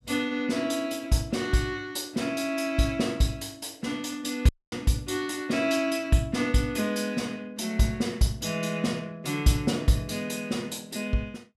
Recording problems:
audio cutting out; at 4.5 s

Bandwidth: 14.5 kHz